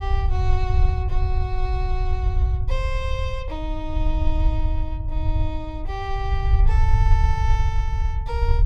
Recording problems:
rumble; below 74 Hz, SNR -8 dB

